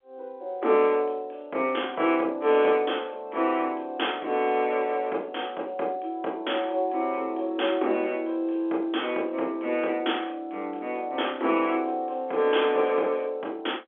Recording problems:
phone line; 260 Hz to 3.4 kHz, G.711

